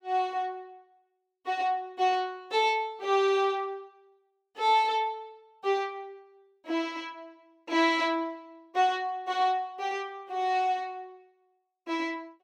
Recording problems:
none

